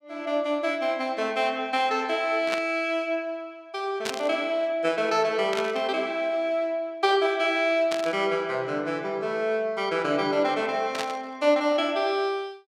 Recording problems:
burst of static; 5 times, first at 2.5 s; peak -1 dB vs average level

